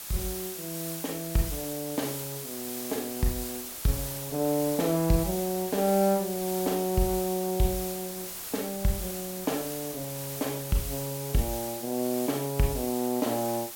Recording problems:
hiss; slope +1 dB per octave, SNR 6 dB
wind on the microphone; below 1.5 kHz, SNR 25 dB

